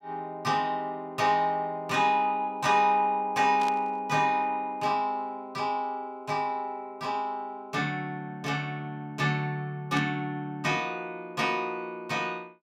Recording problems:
burst of static; at 3.5 s and at 10 s; peak -7 dB vs average level

